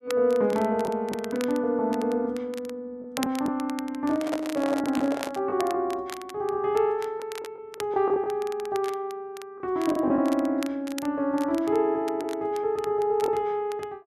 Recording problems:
crackle; vinyl, SNR 17 dB
lost packets; 3% of the sound replaced, filled with the last packet
handling noise; from 4 to 5.5 s; peak 0 dB vs average level

